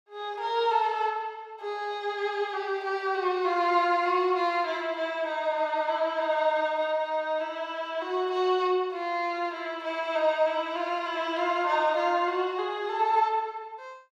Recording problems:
none

